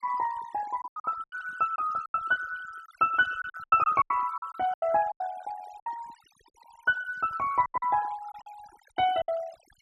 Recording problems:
noise reduction artefacts; signal-to-artefact ratio 18 dB
lost packets; 12% of the sound replaced, filled with silence

